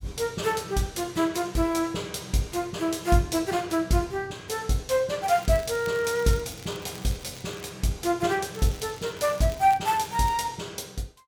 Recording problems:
crackling; from 5 to 7.5 s and from 8.5 to 10 s; loose cable, SNR 20 dB

